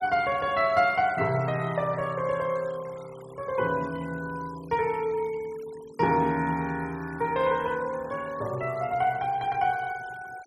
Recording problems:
denoising artefacts; signal-to-artefact ratio 22 dB

